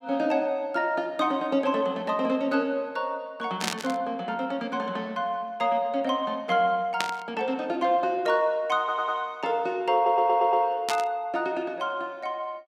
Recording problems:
burst of static; at 3.5 s, at 7 s and at 11 s; peak +3 dB vs average level
audio stuttering; at 9 s and at 10 s

